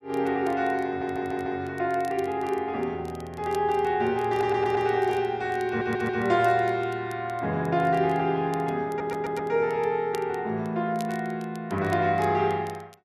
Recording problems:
crackling; vinyl, SNR 26 dB
audio stuttering; 4 times, first at 1 s

